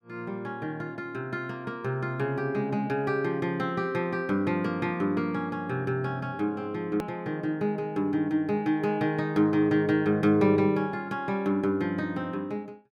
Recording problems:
edit click; at 7 s

